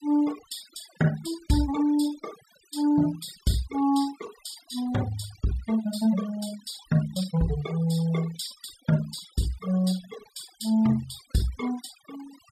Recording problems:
denoising artefacts; signal-to-artefact ratio 17 dB

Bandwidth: 14.5 kHz